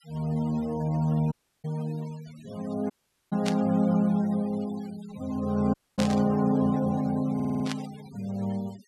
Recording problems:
noise reduction artefacts; signal-to-artefact ratio 21 dB
dropout; at 1.5 s, at 3 s and at 5.5 s
static burst; at 3.5 s, at 6 s and at 7.5 s; peak -1 dB vs average level
audio stuttering; at 7.5 s

